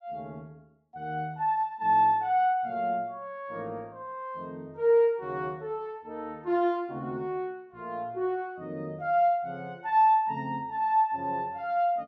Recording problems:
none

